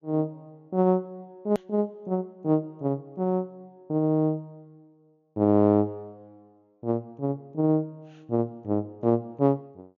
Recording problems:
treble missing; nothing above 6.9 kHz
click at an edit; at 1.5 s

